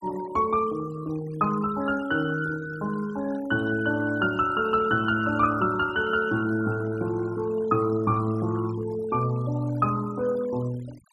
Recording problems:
noise reduction artefacts; signal-to-artefact ratio 19 dB

